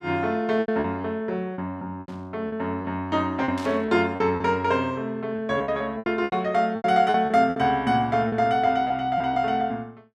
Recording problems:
lost packets; 10% of the sound replaced, filled with repeated pitch periods
burst of static; at 2 s and at 3.5 s; peak -12 dB vs average level

